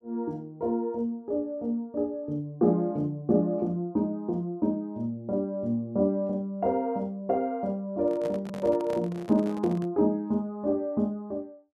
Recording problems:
handling noise; from 8 to 10 s; peak -7 dB vs average level

